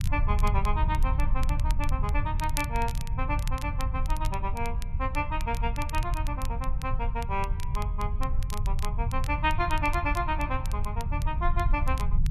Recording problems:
low-frequency rumble; below 72 Hz, SNR -2 dB
crackling; vinyl, SNR 14 dB

